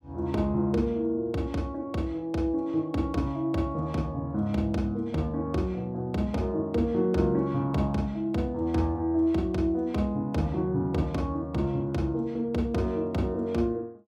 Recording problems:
none

